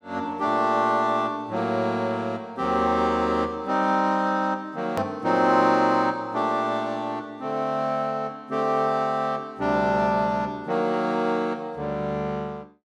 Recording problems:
hard cut with a click; at 5 s

